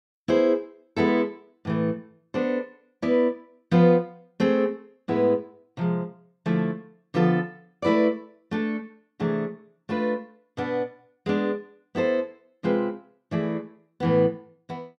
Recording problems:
none

